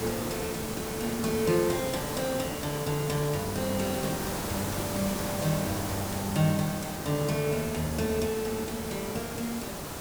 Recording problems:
hiss; slope -5 dB per octave, SNR 3 dB

